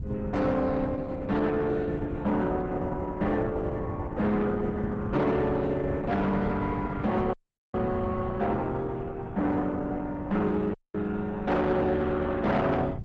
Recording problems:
lossy compression; Opus, log-spectral distance 2 dB
distorted audio; soft clipping, signal-to-distortion ratio 12 dB
wind noise; below 160 Hz, SNR 10 dB
audio cutting out; at 7.5 s and at 11 s

